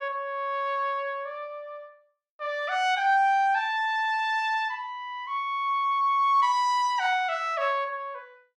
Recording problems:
none

